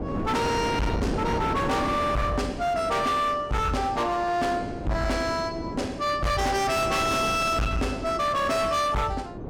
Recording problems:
distortion; hard clipping, signal-to-distortion ratio 7 dB
wind on the microphone; below 560 Hz, SNR 8 dB

